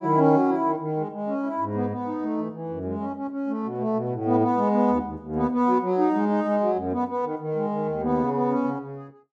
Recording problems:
none

